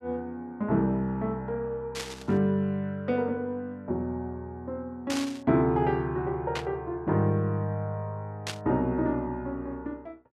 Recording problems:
burst of static; 4 times, first at 2 s; peak 0 dB vs average level

